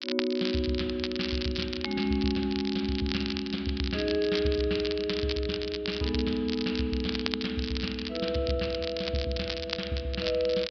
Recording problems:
treble cut off; nothing above 5.5 kHz
crackle; vinyl, SNR 6 dB

